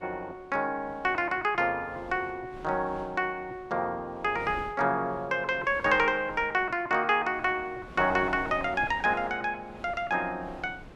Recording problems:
wind on the microphone; below 710 Hz, SNR 20 dB

